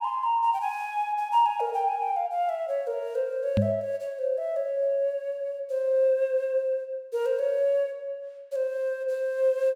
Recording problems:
microphone thump; at 3.5 s; peak +6 dB vs average level

